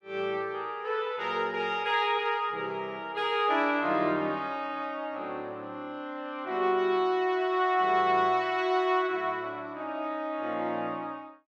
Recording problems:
none

